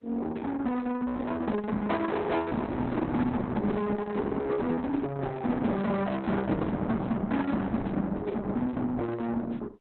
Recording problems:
lossy codec; Opus, log-spectral distance 3 dB, nothing above 4 kHz
distorted audio; soft clipping, signal-to-distortion ratio 6 dB

